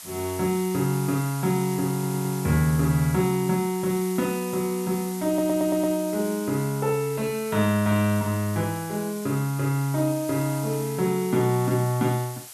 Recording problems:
background hiss; SNR 13 dB
stutter; at 2 s and at 5.5 s

